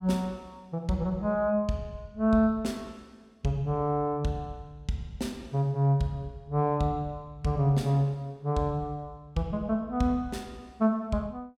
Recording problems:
none

